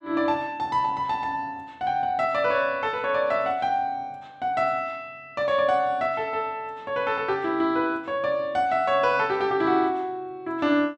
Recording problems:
none

